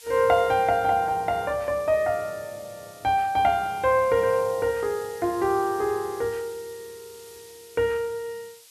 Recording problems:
background hiss; slope +4 dB per octave, SNR 22 dB

